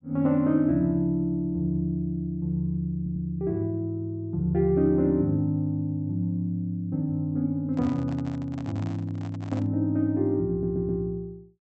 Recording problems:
treble missing; nothing above 7.9 kHz
stutter; at 3 s and at 11 s
microphone handling noise; from 7.5 to 9.5 s; peak -8 dB vs average level

